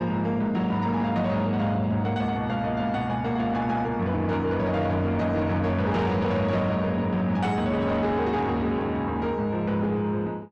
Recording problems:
distorted audio; soft clipping, signal-to-distortion ratio 11 dB

